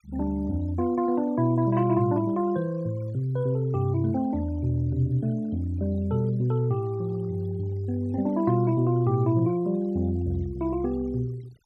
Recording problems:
denoising artefacts; signal-to-artefact ratio 25 dB

